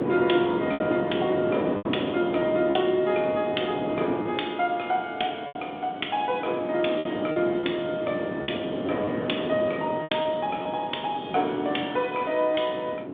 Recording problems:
phone line; 260 Hz to 3.6 kHz, G.726
wind noise; below 510 Hz, SNR 6 dB
packet loss; 5% of the sound replaced, filled with repeated pitch periods

